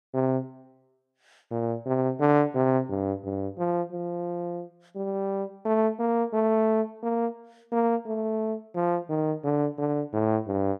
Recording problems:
none

